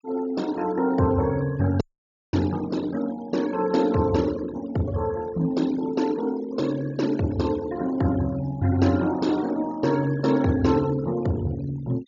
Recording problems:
treble missing; nothing above 7 kHz
denoising artefacts; signal-to-artefact ratio 18 dB
dropout; at 2 s for 0.5 s

